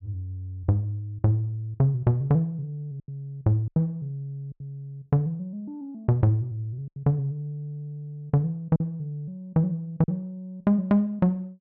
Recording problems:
packet loss; 4% of the sound replaced, filled with silence

